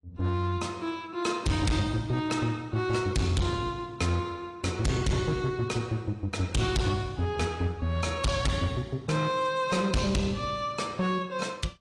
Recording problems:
codec artefacts; AAC, log-spectral distance 3 dB, nothing above 10.1 kHz
distorted audio; hard clipping, signal-to-distortion ratio 6 dB

